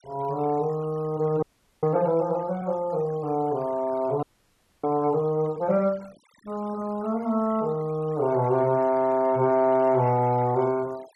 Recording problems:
denoising artefacts; signal-to-artefact ratio 25 dB
audio freezing; at 1.5 s and at 4 s for 0.5 s

